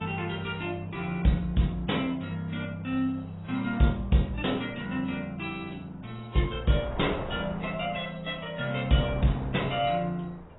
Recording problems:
lossy codec; AAC, log-spectral distance 4 dB, nothing above 3.8 kHz
wind noise; below 790 Hz, SNR 15 dB

